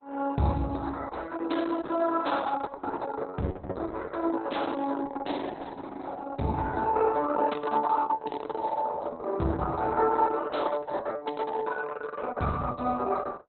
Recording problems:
codec artefacts; Opus, log-spectral distance 5 dB, nothing above 4.1 kHz

